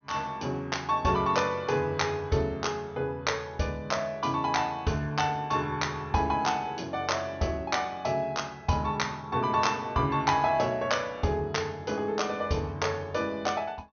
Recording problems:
treble missing; nothing above 6.4 kHz

